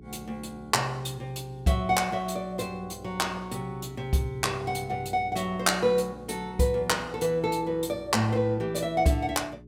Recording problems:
hum; 60 Hz, harmonics up to 420 Hz, SNR 20 dB

